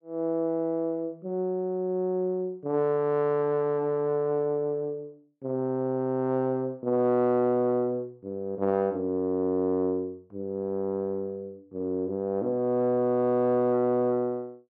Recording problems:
none

